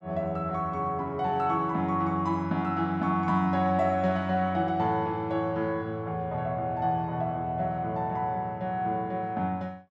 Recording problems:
none

